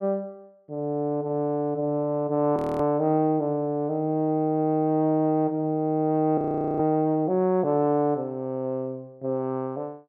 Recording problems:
audio freezing; at 2.5 s and at 6.5 s

